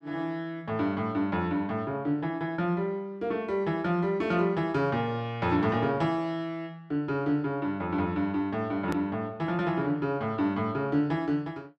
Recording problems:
hard cut with a click; at 9 s

